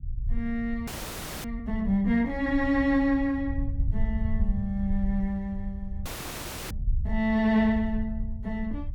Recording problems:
rumble; below 74 Hz, SNR 7 dB
audio freezing; at 1 s for 0.5 s and at 6 s for 0.5 s

